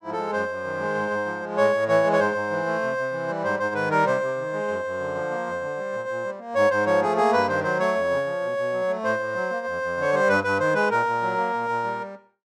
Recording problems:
none

